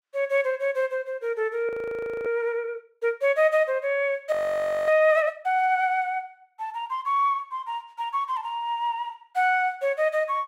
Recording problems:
frozen audio; at 1.5 s for 0.5 s and at 4.5 s for 0.5 s

